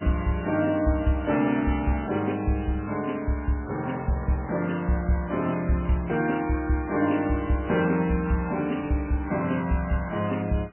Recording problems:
codec artefacts; MP3, log-spectral distance 4 dB, nothing above 2.7 kHz

